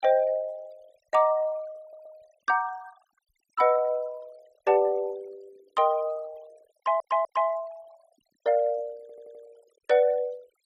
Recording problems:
noise reduction artefacts; signal-to-artefact ratio 26 dB
audio stuttering; at 2 s, at 7 s and at 9 s

